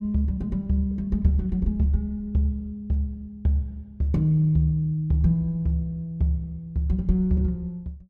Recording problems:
none

